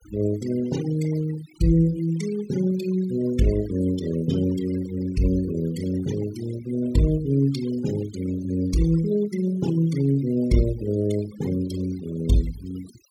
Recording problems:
noise reduction artefacts; signal-to-artefact ratio 15 dB

